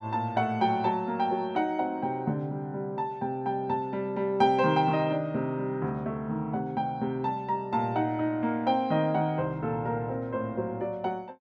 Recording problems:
none

